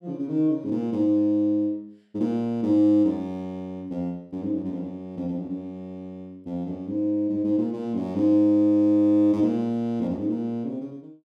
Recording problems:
none

